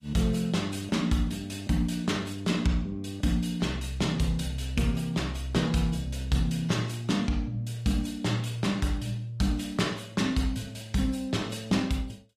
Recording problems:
lossy compression; AAC, log-spectral distance 3 dB, nothing above 15.1 kHz

